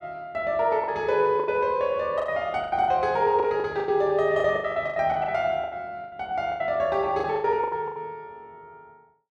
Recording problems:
packet loss; 15% of the sound replaced, filled with the last packet

